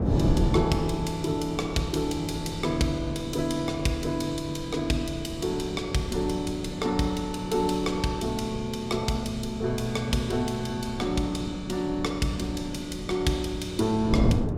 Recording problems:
wind noise; below 280 Hz, SNR 7 dB

